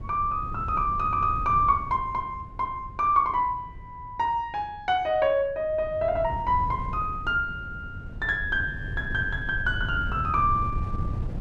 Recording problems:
wind noise; below 130 Hz, SNR 10 dB

